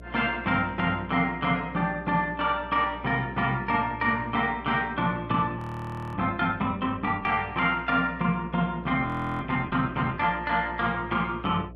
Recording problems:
electrical hum; 60 Hz, harmonics up to 720 Hz, SNR 19 dB
audio freezing; at 5.5 s for 0.5 s and at 9 s

